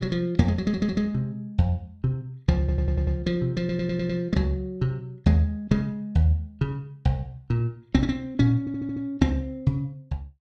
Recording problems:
audio stuttering; 4 times, first at 0.5 s

